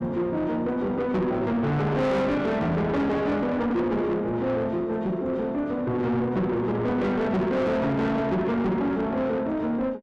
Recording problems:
distortion; soft clipping, signal-to-distortion ratio 8 dB

